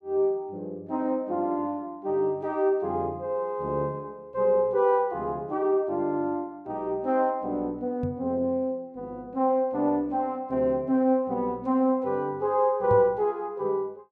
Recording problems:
microphone bump; at 8 s and at 13 s; peak -1 dB vs average level

